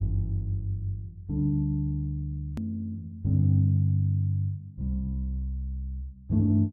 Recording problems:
hard cut with a click; at 2.5 s

